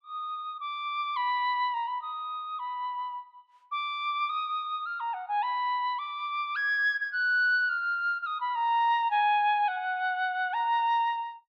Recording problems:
none

